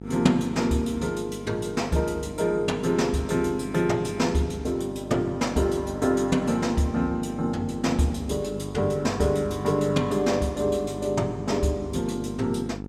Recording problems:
hum; 50 Hz, harmonics up to 950 Hz, SNR 12 dB

